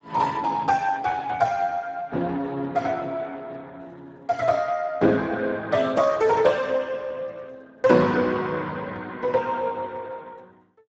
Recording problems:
codec artefacts; Speex, log-spectral distance 4 dB, nothing above 7.3 kHz

